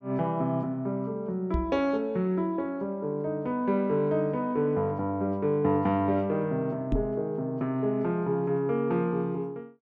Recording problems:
knock on the microphone; at 1.5 s and at 7 s; peak +4 dB vs average level

